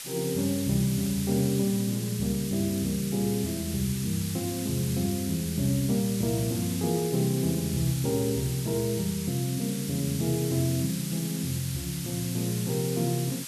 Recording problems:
background hiss; slope +3 dB per octave, SNR 8 dB

